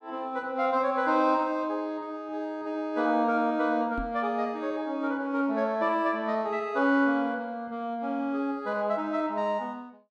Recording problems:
microphone bump; at 4 s; peak -4 dB vs average level

